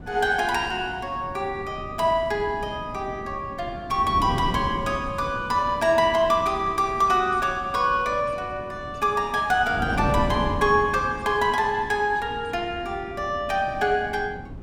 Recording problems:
wind noise; below 290 Hz, SNR 11 dB

